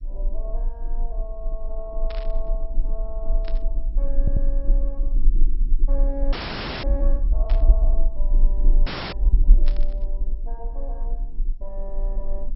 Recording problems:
lossy codec; MP2, log-spectral distance 2 dB
low-frequency rumble; below 36 Hz, strongest tone 26 Hz, SNR -13 dB
burst of static; 4 times, first at 2 s; peak +2 dB vs average level
stutter; at 4 s
frozen audio; at 6.5 s for 0.5 s and at 9 s

